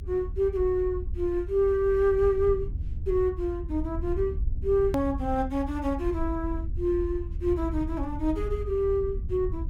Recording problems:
rumble; below 78 Hz, SNR 7 dB
edit click; at 5 s

